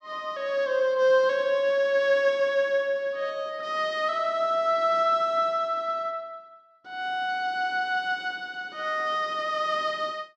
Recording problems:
none

